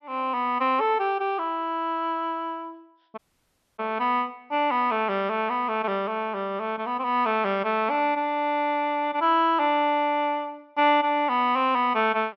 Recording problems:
low-pass filter; nothing above 5.8 kHz
dropout; at 3 s for 0.5 s

